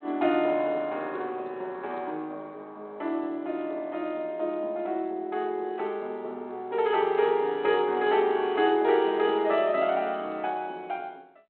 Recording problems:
phone line; 240 Hz to 3.8 kHz, G.726

